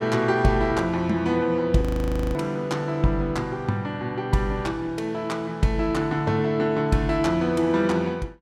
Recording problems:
frozen audio; at 2 s for 0.5 s

